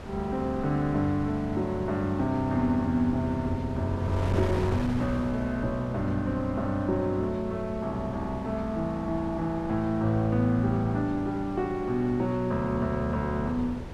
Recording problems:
wind on the microphone; below 520 Hz, SNR 12 dB

